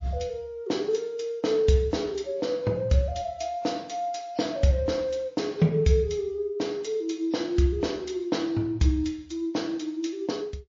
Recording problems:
lossy compression; MP3, log-spectral distance 2 dB, nothing above 6.2 kHz

